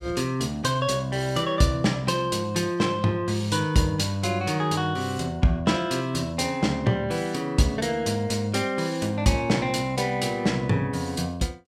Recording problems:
none

